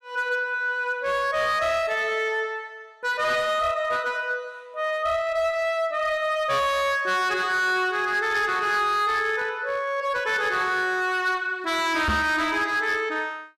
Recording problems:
distortion; hard clipping, signal-to-distortion ratio 11 dB
knock on the microphone; at 12 s; peak +2 dB vs average level

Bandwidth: 14 kHz